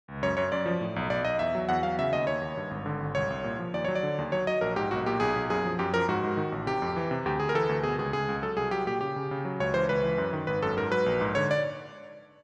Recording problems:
none

